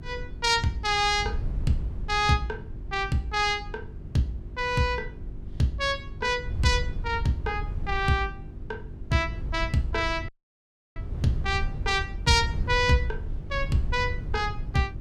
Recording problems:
mains hum; 50 Hz, harmonics up to 400 Hz, SNR 19 dB
wind on the microphone; below 92 Hz, SNR 9 dB
dropout; at 10 s for 0.5 s

